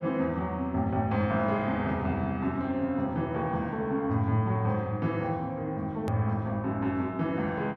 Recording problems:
click at an edit; at 6 s

